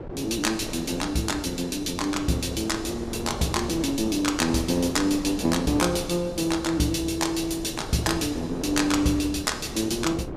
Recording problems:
wind on the microphone; below 490 Hz, SNR 10 dB

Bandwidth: 15.5 kHz